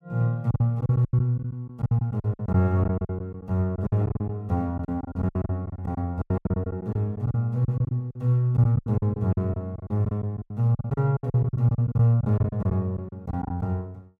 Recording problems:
packet loss; 18% of the sound replaced, filled with silence

